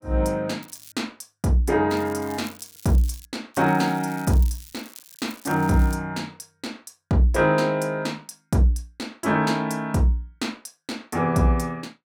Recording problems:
crackle; at 0.5 s, from 2 to 3.5 s and from 3.5 to 6 s; loose cable, SNR 20 dB

